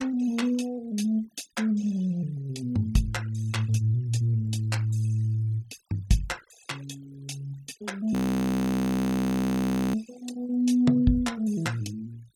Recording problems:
denoising artefacts; signal-to-artefact ratio 22 dB
frozen audio; at 8 s for 2 s

